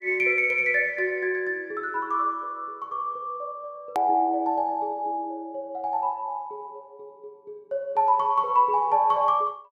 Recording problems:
hard cut with a click; at 4 s

